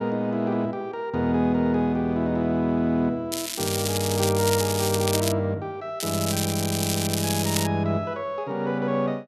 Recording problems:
crackle; from 3.5 to 5.5 s and from 6 to 7.5 s; loose cable, SNR 3 dB

